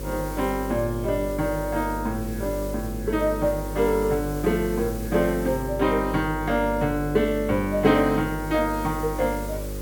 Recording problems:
electrical hum; 50 Hz, harmonics up to 550 Hz, SNR 9 dB
hiss; SNR 17 dB

